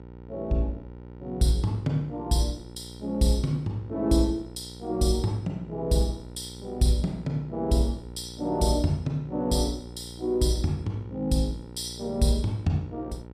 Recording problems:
hum; 60 Hz, harmonics up to 1 kHz, SNR 15 dB

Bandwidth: 15 kHz